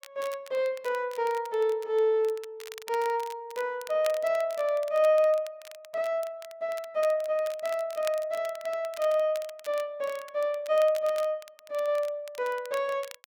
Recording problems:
crackling; vinyl, SNR 19 dB

